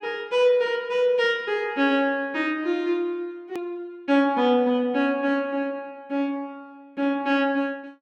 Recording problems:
click at an edit; at 3.5 s

